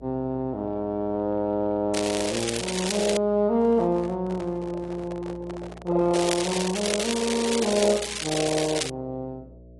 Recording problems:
lossy compression; AAC, log-spectral distance 5 dB
hum; 60 Hz, harmonics up to 660 Hz, SNR 22 dB
crackling; from 2 to 3 s and from 6 to 9 s; loose cable, SNR 4 dB
handling noise; from 3.5 to 6.5 s; peak -9 dB vs average level

